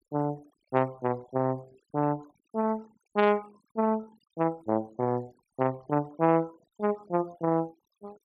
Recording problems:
noise reduction artefacts; signal-to-artefact ratio 26 dB

